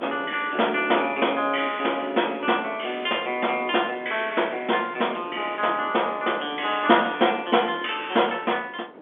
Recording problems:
telephone audio; 260 Hz to 3.5 kHz, G.711
wind noise; below 770 Hz, SNR 18 dB

